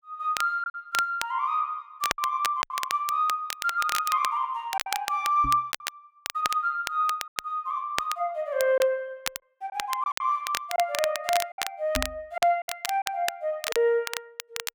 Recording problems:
crackling; vinyl, SNR 7 dB
packet loss; 6% of the sound replaced, filled with silence
knock on the microphone; at 5.5 s and at 12 s; peak -2 dB vs average level

